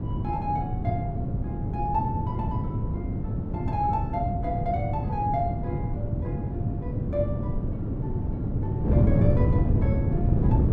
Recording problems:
wind on the microphone; below 200 Hz, SNR -5 dB

